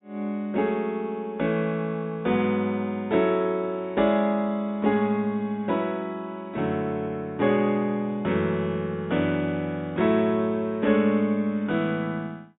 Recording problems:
treble cut off; nothing above 4 kHz

